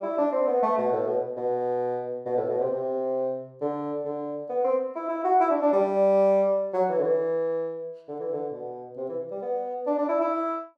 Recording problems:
none

